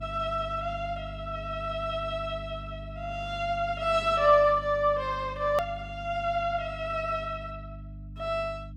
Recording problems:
electrical hum; 50 Hz, harmonics up to 300 Hz, SNR 14 dB
hard cut with a click; at 5.5 s

